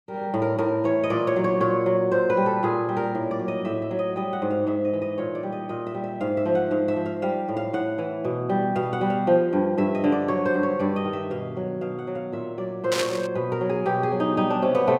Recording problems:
static burst; at 13 s; peak +2 dB vs average level

